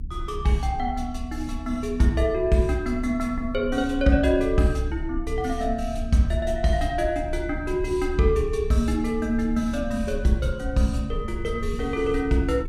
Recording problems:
rumble; below 68 Hz, strongest tone 28 Hz, SNR 10 dB

